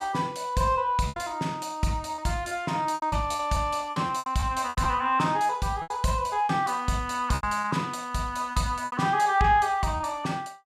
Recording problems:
packet loss; 9% of the sound replaced, filled with repeated pitch periods

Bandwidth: 14.5 kHz